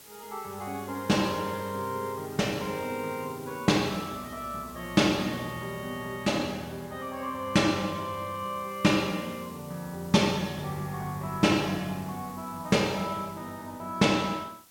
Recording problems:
hiss; slope -1 dB per octave, SNR 20 dB

